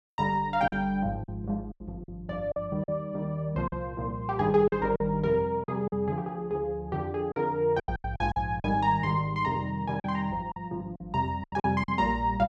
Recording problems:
packet loss; 9% of the sound replaced, filled with silence

